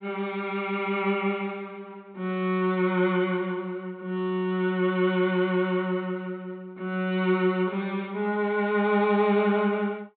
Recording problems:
treble missing; nothing above 4 kHz

